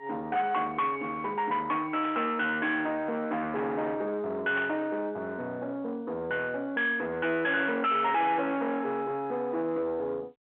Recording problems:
phone line; 280 Hz to 3.3 kHz, G.711
distortion; soft clipping, signal-to-distortion ratio 8 dB
burst of static; at 2 s and at 4.5 s; peak -6 dB vs average level

